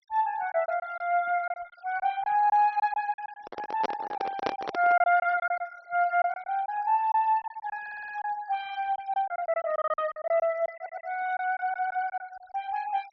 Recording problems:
treble cut off; nothing above 5.8 kHz
denoising artefacts; signal-to-artefact ratio 26 dB
packet loss; 11% of the sound replaced, filled with silence
microphone handling noise; from 3.5 to 5 s; peak +3 dB vs average level
stutter; at 8 s, at 11 s and at 12 s

